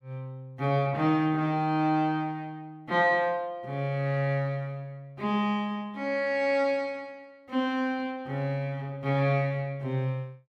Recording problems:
none

